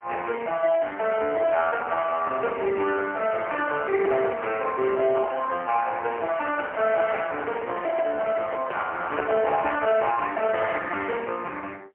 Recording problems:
phone line; 340 Hz to 2.9 kHz, AMR-NB, then MP3
handling noise; from 6 to 10 s; peak +1 dB vs average level

